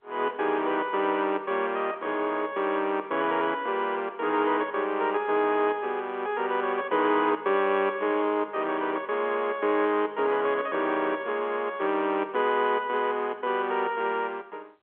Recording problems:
phone line; 260 Hz to 3.4 kHz, G.711

